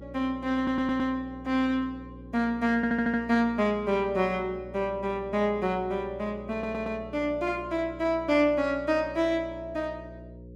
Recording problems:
hum; 60 Hz, harmonics up to 540 Hz, SNR 17 dB
stutter; at 0.5 s, at 3 s and at 6.5 s

